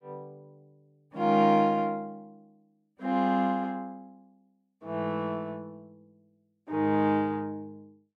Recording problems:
none

